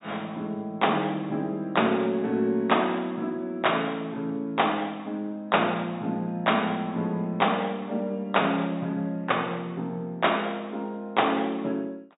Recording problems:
low-pass filter; nothing above 4 kHz

